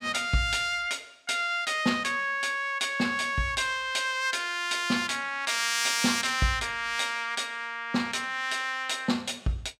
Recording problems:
none

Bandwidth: 16.5 kHz